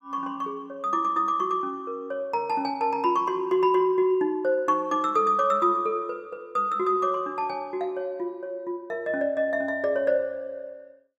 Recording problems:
none

